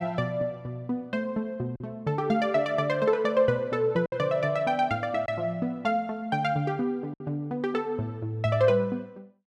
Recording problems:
packet loss; 1.9% of the sound replaced, filled with silence

